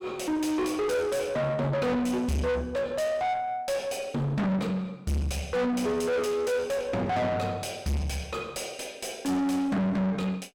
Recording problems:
distortion; soft clipping, signal-to-distortion ratio 5 dB

